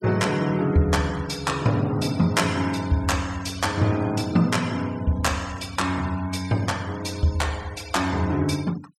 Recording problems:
denoising artefacts; signal-to-artefact ratio 19 dB

